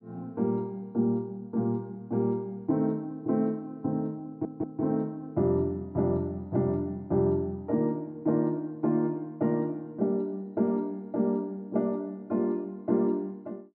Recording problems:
stutter; at 4.5 s

